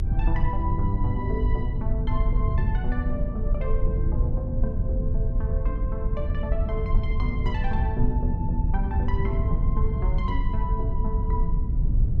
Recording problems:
low-frequency rumble; below 82 Hz, SNR -6 dB

